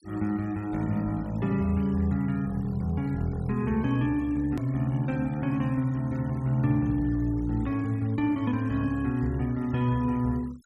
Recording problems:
noise reduction artefacts; signal-to-artefact ratio 26 dB
edit click; at 4.5 s

